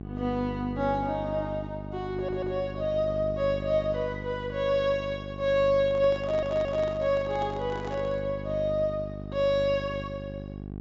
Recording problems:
treble missing; nothing above 7.4 kHz
hum; 50 Hz, harmonics up to 800 Hz, SNR 9 dB
stutter; at 2 s and at 6 s
microphone handling noise; from 6 to 8.5 s; peak -8 dB vs average level

